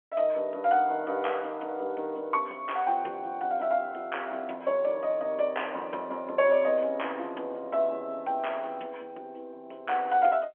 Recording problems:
telephone audio; 340 Hz to 3.3 kHz, G.711

